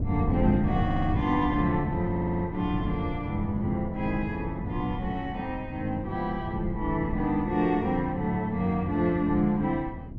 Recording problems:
wind noise; below 180 Hz, SNR 7 dB
audio stuttering; at 1 s and at 2 s

